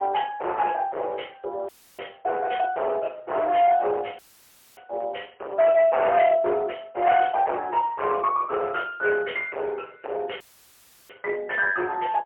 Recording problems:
telephone audio; 370 Hz to 3.1 kHz, AMR-NB, then MP3
distortion; hard clipping, uneven, signal-to-distortion ratio 7 dB
audio cutting out; at 1.5 s, at 4 s for 0.5 s and at 10 s for 0.5 s

